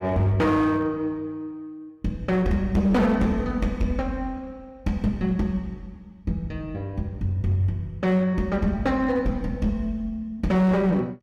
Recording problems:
distorted audio; hard clipping, signal-to-distortion ratio 10 dB

